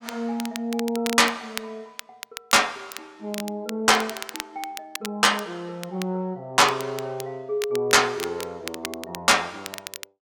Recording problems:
crackling; vinyl, SNR 14 dB

